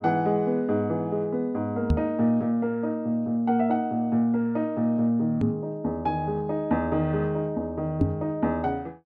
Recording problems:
microphone thump; at 2 s, at 5.5 s and at 8 s; peak +6 dB vs average level

